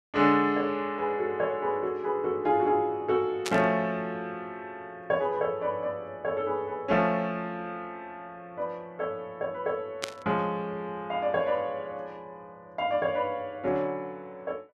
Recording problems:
static burst; at 3.5 s and at 10 s; peak +2 dB vs average level

